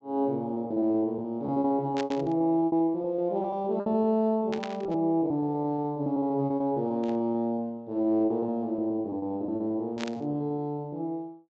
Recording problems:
treble missing; nothing above 8 kHz
lost packets; 17% of the sound replaced, filled with repeated pitch periods
burst of static; 4 times, first at 2 s; peak -4 dB vs average level

